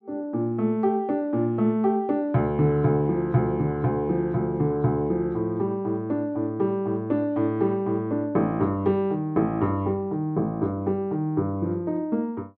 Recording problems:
none

